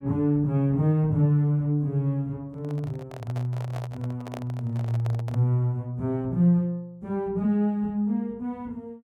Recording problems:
microphone handling noise; from 2.5 to 5.5 s; peak -8 dB vs average level

